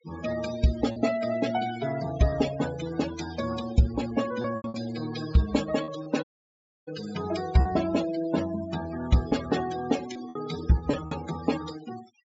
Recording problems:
low-pass filter; nothing above 8 kHz
noise reduction artefacts; signal-to-artefact ratio 11 dB
lost packets; 4% of the sound replaced, filled with repeated pitch periods
dropout; at 6 s for 0.5 s

